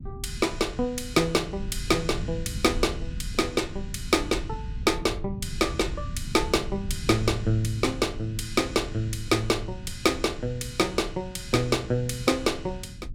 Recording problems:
low-frequency rumble; below 120 Hz, SNR 11 dB

